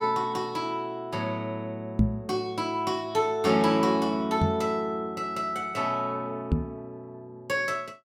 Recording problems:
microphone thump; at 2 s, at 4.5 s and at 6.5 s; peak +9 dB vs average level

